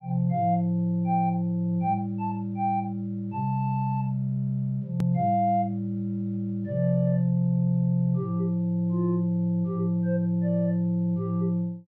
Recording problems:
click at an edit; at 5 s

